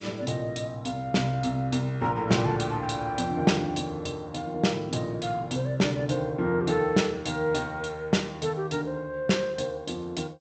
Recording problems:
lossy codec; G.722, log-spectral distance 3 dB, nothing above 8.2 kHz

